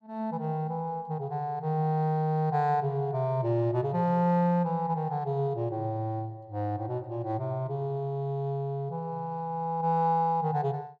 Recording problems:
none

